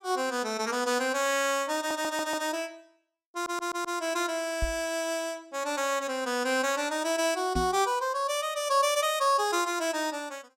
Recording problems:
audio stuttering; at 2 s and at 3.5 s
knock on the microphone; at 4.5 s and at 7.5 s; peak 0 dB vs average level

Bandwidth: 16.5 kHz